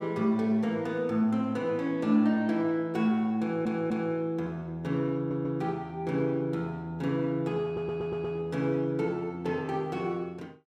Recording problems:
audio stuttering; at 3.5 s, at 5 s and at 7.5 s

